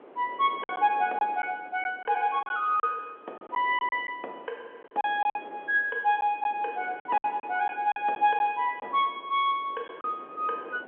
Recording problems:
phone line; 340 Hz to 3.7 kHz, G.711
wind on the microphone; below 770 Hz, SNR 21 dB
lost packets; 7% of the sound replaced, filled with silence

